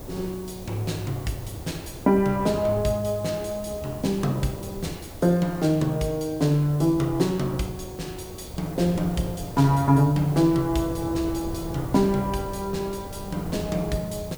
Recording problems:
hiss; SNR 21 dB
wind on the microphone; below 410 Hz, SNR 14 dB

